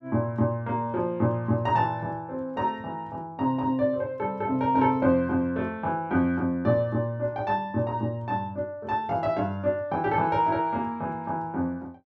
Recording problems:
none

